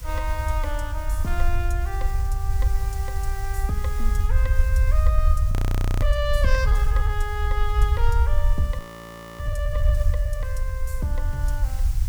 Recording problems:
background hiss; slope 0 dB per octave, SNR 13 dB
rumble; below 66 Hz, SNR -7 dB
audio freezing; at 5.5 s and at 9 s for 0.5 s

